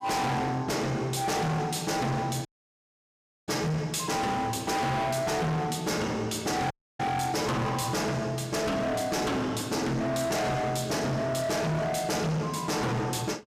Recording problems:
distortion; hard clipping, signal-to-distortion ratio 6 dB
audio cutting out; at 2.5 s for 1 s and at 6.5 s

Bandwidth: 15 kHz